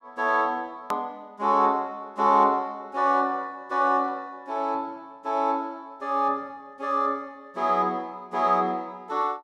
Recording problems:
hard cut with a click; at 1 s

